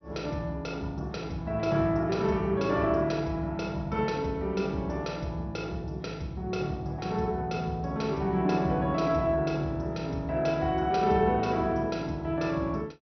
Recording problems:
low-pass filter; nothing above 5.9 kHz

